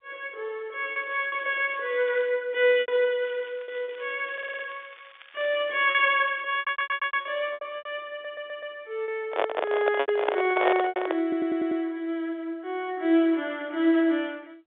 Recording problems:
phone line; 260 Hz to 3.8 kHz, G.711
packet loss; 6% of the sound replaced, filled with repeated pitch periods
crackle; from 1 to 2.5 s and from 3 to 6.5 s; loose cable, SNR 24 dB
stutter; 4 times, first at 4.5 s
microphone handling noise; from 9.5 to 11 s; peak +5 dB vs average level

